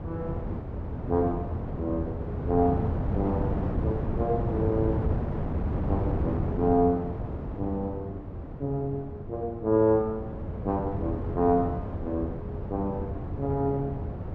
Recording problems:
wind noise; below 300 Hz, SNR 3 dB

